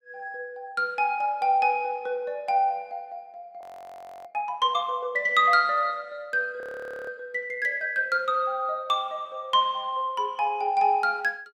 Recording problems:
frozen audio; at 3.5 s for 0.5 s and at 6.5 s

